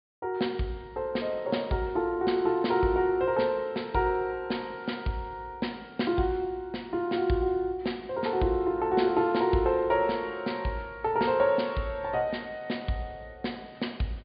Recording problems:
low-pass filter; nothing above 4.9 kHz

